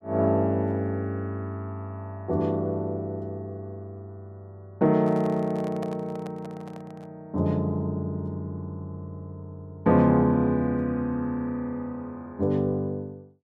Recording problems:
microphone handling noise; from 5 to 7 s; peak -7 dB vs average level

